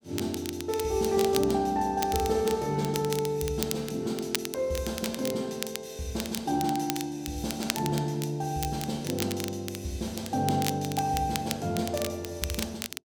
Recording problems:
crackling; vinyl, SNR 8 dB

